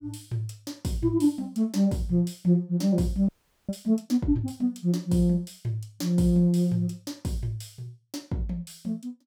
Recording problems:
audio freezing; at 3.5 s

